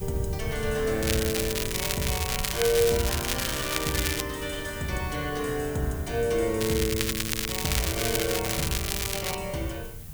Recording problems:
background hiss; slope -1 dB per octave, SNR 15 dB
low-frequency rumble; below 130 Hz, SNR 10 dB
crackle; from 1 to 4 s and from 6.5 to 9.5 s; loose cable, SNR 0 dB

